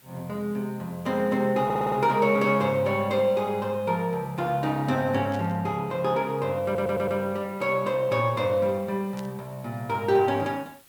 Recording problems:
background hiss; slope -1 dB per octave, SNR 27 dB
stutter; at 1.5 s and at 6.5 s
static burst; at 5.5 s and at 9 s; peak -13 dB vs average level

